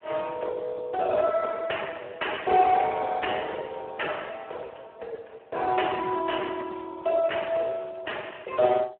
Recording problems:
telephone audio; 340 Hz to 3.1 kHz, Speex

